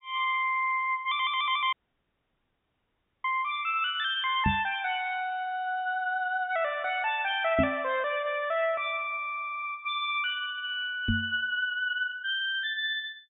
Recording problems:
treble cut off; nothing above 4 kHz
audio cutting out; at 1.5 s for 1.5 s
microphone bump; at 4.5 s, at 7.5 s and at 11 s; peak +5 dB vs average level

